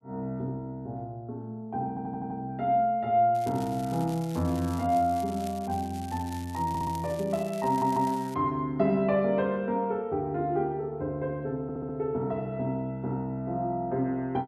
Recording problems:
audio stuttering; 4 times, first at 2 s
crackle; from 3.5 to 8.5 s; loose cable, SNR 19 dB

